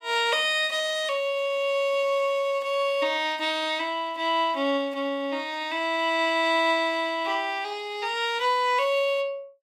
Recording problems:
none

